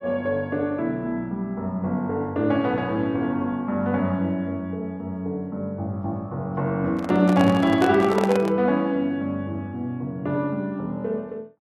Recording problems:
handling noise; from 7 to 8.5 s; peak +1 dB vs average level

